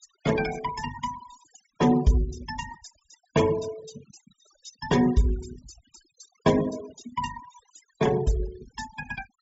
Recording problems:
treble cut off; nothing above 8 kHz
noise reduction artefacts; signal-to-artefact ratio 16 dB

